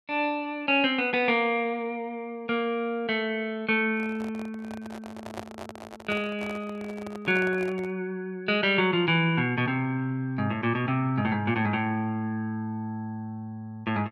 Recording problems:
microphone handling noise; from 4 to 8 s; peak -5 dB vs average level

